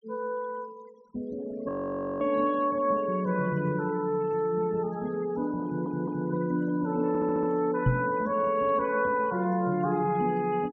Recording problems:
treble missing; nothing above 8 kHz
noise reduction artefacts; signal-to-artefact ratio 24 dB
audio freezing; at 1.5 s for 0.5 s
audio stuttering; at 5.5 s and at 7 s
microphone bump; at 8 s; peak +6 dB vs average level

